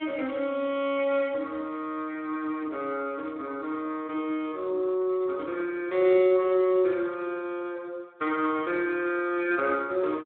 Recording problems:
phone line; 190 Hz to 3.9 kHz, Speex

